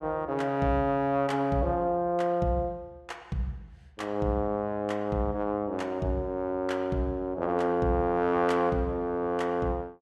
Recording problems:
none

